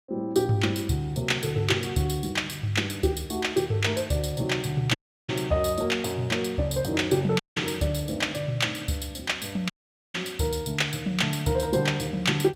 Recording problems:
dropout; at 5 s, at 7.5 s and at 9.5 s

